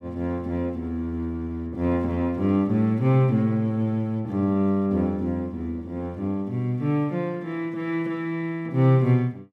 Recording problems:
none

